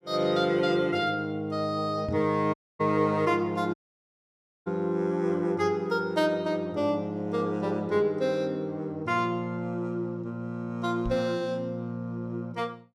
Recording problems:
knock on the microphone; at 2 s and at 11 s; peak -3 dB vs average level
audio cutting out; at 2.5 s and at 3.5 s for 1 s

